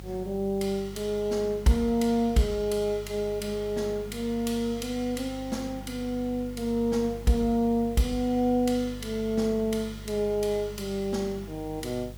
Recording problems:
electrical hum; 50 Hz, harmonics up to 550 Hz, SNR 15 dB
hiss; slope 0 dB per octave, SNR 25 dB

